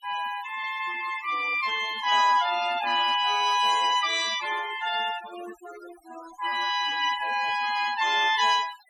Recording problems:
noise reduction artefacts; signal-to-artefact ratio 15 dB

